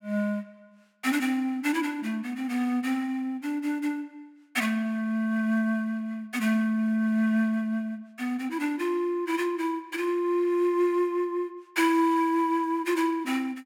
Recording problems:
none

